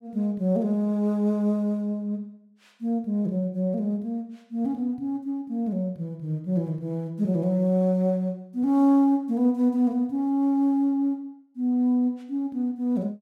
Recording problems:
none

